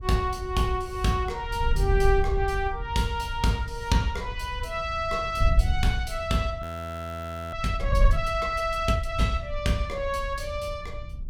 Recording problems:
wind noise; below 74 Hz, SNR 4 dB
audio freezing; at 6.5 s for 1 s

